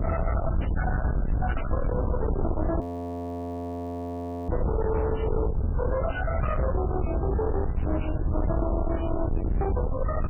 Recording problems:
codec artefacts; MP3, log-spectral distance 3 dB
distorted audio; soft clipping, signal-to-distortion ratio 6 dB
hiss; SNR 23 dB
rumble; below 230 Hz, SNR -1 dB
crackle; from 1 to 2 s and from 6.5 to 9.5 s; loose cable, SNR 22 dB
frozen audio; at 3 s for 1.5 s

